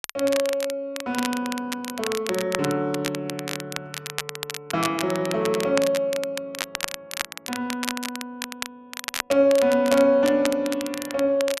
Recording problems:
crackle; vinyl, SNR 9 dB

